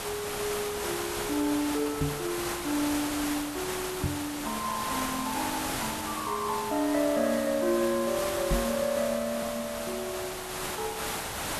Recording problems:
background hiss; slope -3 dB per octave, SNR 3 dB
microphone thump; at 2 s, at 4 s and at 8.5 s; peak +6 dB vs average level

